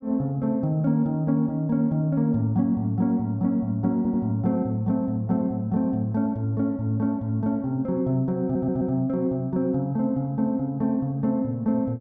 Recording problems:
stutter; at 4 s and at 8.5 s

